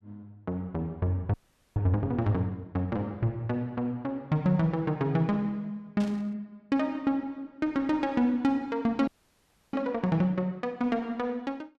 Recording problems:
audio freezing; at 1.5 s and at 9 s for 0.5 s
burst of static; at 6 s; peak -11 dB vs average level

